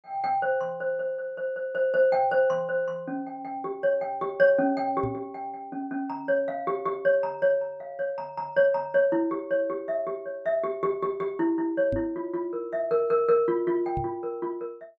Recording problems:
microphone bump; at 5 s, at 12 s and at 14 s; peak -2 dB vs average level

